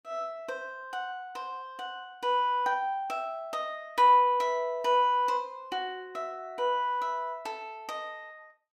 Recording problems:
none

